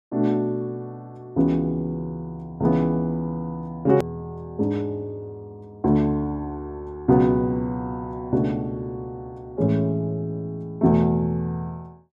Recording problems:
hard cut with a click; at 4 s

